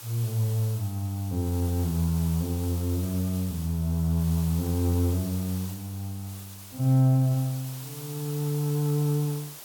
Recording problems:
hiss; SNR 14 dB

